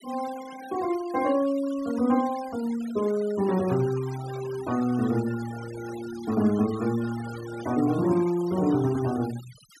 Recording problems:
denoising artefacts; signal-to-artefact ratio 18 dB

